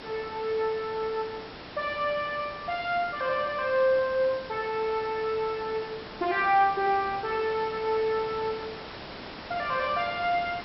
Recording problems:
low-pass filter; nothing above 5.5 kHz
hiss; slope -4 dB per octave, SNR 13 dB

